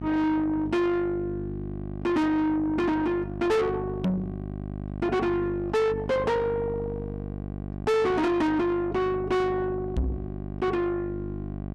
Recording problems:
distorted audio; soft clipping, signal-to-distortion ratio 6 dB
hum; 50 Hz, harmonics up to 1.2 kHz, SNR 9 dB
microphone thump; at 4 s and at 10 s; peak +4 dB vs average level

